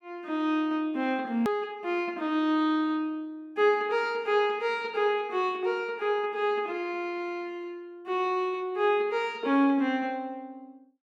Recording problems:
click at an edit; at 1.5 s

